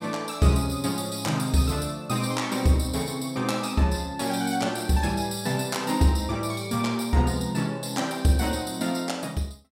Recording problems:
none

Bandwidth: 16 kHz